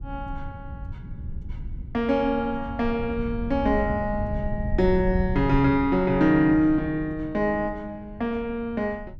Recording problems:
rumble; below 100 Hz, SNR 11 dB

